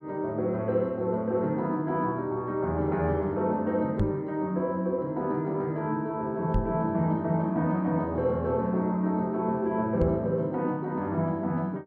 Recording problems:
microphone thump; at 4 s, at 6.5 s and at 10 s; peak +4 dB vs average level

